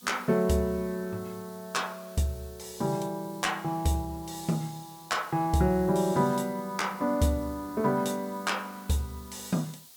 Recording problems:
background hiss; SNR 21 dB

